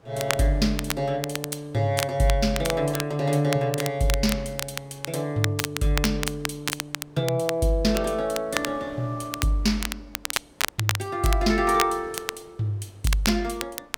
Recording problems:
wind on the microphone; below 990 Hz, SNR 25 dB
crackling; vinyl, SNR 7 dB

